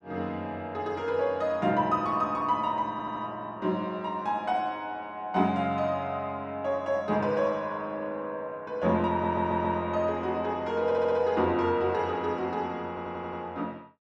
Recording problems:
stutter; 4 times, first at 3 s

